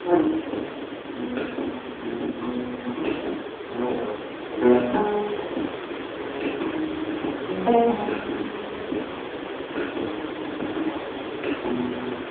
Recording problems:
phone line; 240 Hz to 2.6 kHz, AMR-NB
background hiss; SNR 6 dB

